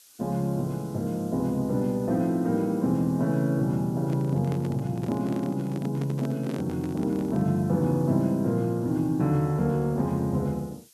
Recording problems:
hiss; SNR 27 dB
microphone handling noise; from 4 to 7.5 s; peak -5 dB vs average level

